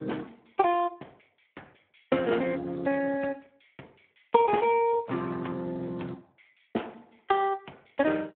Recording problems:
phone line; 190 Hz to 2.9 kHz, Speex

